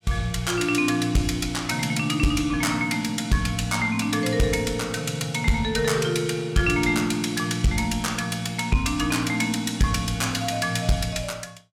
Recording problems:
distortion; soft clipping, signal-to-distortion ratio 12 dB

